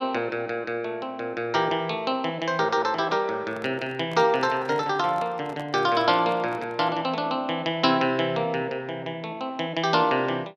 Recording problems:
microphone handling noise; from 3.5 to 7 s; peak -10 dB vs average level

